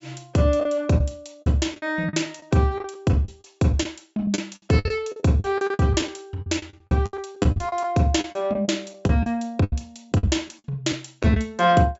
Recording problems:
treble cut off; nothing above 8 kHz
lost packets; 14% of the sound replaced, filled with the last packet

